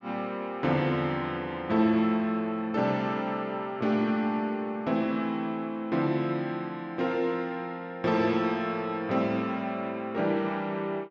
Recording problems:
low-pass filter; nothing above 8 kHz

